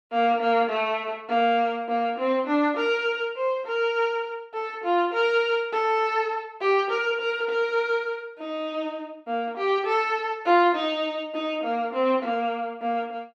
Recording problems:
none

